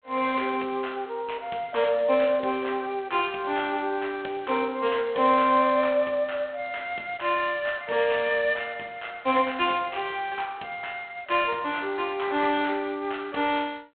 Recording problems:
phone line; 280 Hz to 3.6 kHz, G.726

